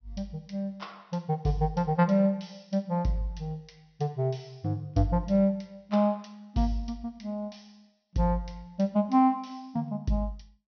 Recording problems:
low-pass filter; nothing above 6 kHz

